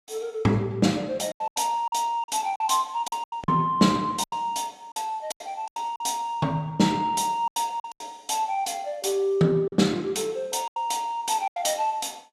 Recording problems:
lost packets; 10% of the sound replaced, filled with silence

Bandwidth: 14.5 kHz